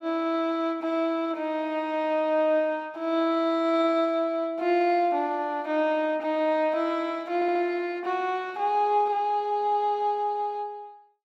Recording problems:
audio stuttering; at 7.5 s

